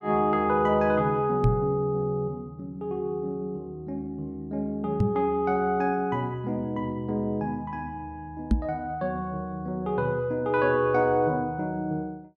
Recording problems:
microphone thump; at 1.5 s, at 5 s and at 8.5 s; peak +8 dB vs average level

